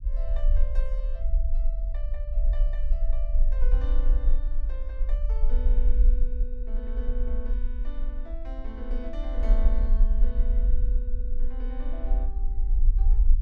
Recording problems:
low-frequency rumble; below 42 Hz, strongest tone 24 Hz, SNR -15 dB

